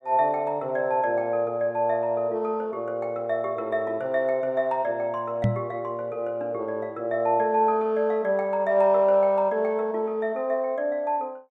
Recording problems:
microphone bump; at 5.5 s; peak +5 dB vs average level

